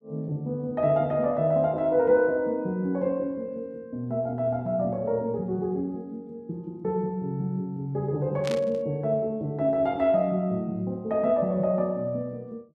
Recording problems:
static burst; at 8.5 s; peak -5 dB vs average level

